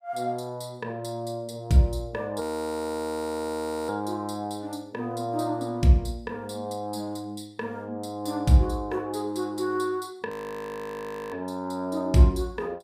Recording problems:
frozen audio; at 2.5 s for 1.5 s and at 10 s for 1 s

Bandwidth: 15.5 kHz